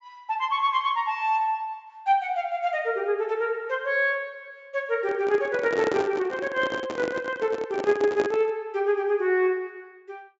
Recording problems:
treble cut off; nothing above 8 kHz
microphone handling noise; from 5 to 8.5 s; peak 0 dB vs average level

